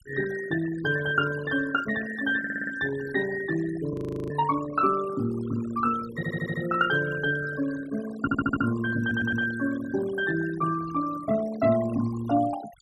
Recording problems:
noise reduction artefacts; signal-to-artefact ratio 14 dB
stutter; 4 times, first at 2.5 s
frozen audio; at 4 s

